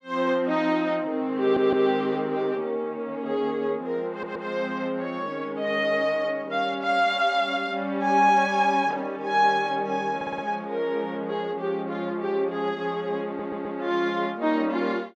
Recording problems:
stutter; 4 times, first at 1.5 s

